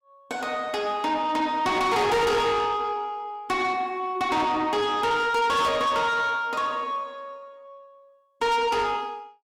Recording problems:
distortion; soft clipping, signal-to-distortion ratio 7 dB

